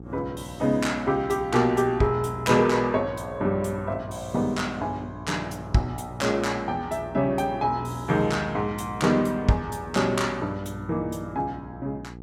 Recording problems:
hum; 60 Hz, harmonics up to 900 Hz, SNR 15 dB

